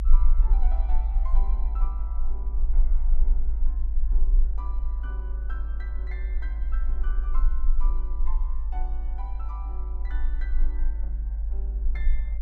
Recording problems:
low-frequency rumble; below 50 Hz, strongest tone 18 Hz, SNR -18 dB

